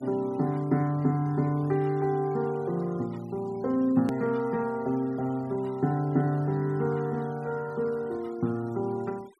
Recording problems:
noise reduction artefacts; signal-to-artefact ratio 26 dB
click at an edit; at 4 s

